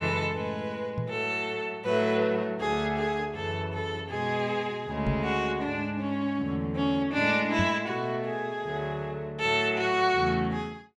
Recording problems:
microphone thump; at 1 s, at 5 s and at 7.5 s; peak +3 dB vs average level

